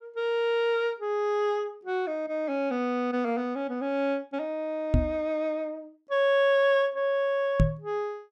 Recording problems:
knock on the microphone; at 5 s and at 7.5 s; peak +8 dB vs average level

